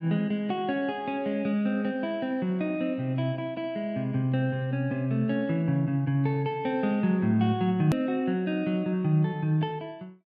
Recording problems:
edit click; at 8 s

